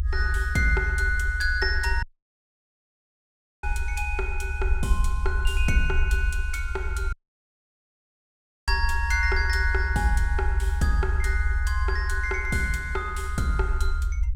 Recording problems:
low-frequency rumble; below 70 Hz, SNR 1 dB
audio cutting out; at 2 s for 1.5 s and at 7 s for 1.5 s

